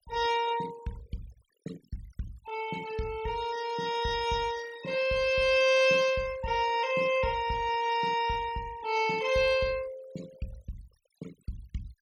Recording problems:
denoising artefacts; signal-to-artefact ratio 20 dB

